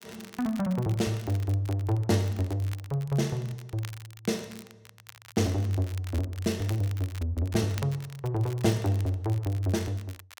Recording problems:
crackle; vinyl, SNR 19 dB

